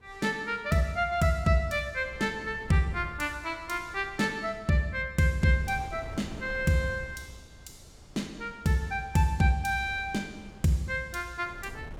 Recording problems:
wind on the microphone; below 290 Hz, SNR 20 dB

